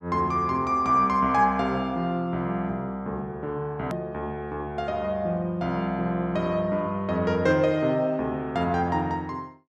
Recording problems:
edit click; at 4 s

